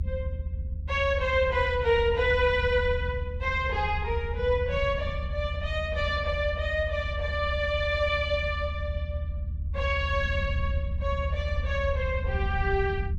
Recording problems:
rumble; below 80 Hz, SNR 4 dB

